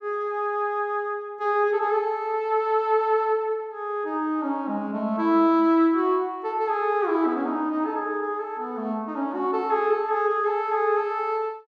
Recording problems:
none

